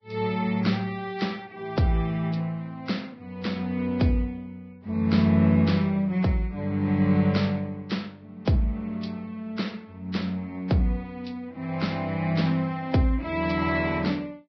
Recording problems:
lossy codec; Vorbis, log-spectral distance 3 dB, nothing above 5.5 kHz

